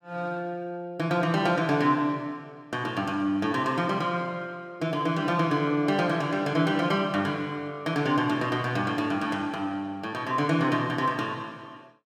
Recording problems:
none

